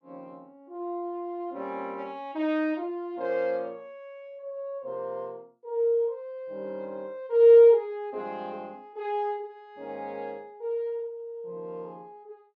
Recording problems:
none

